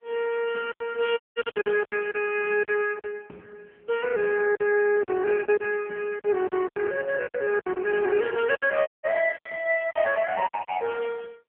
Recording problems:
telephone audio; 220 Hz to 3.2 kHz, AMR-NB
packet loss; 10% of the sound replaced, filled with silence
dropout; at 1 s and at 9 s

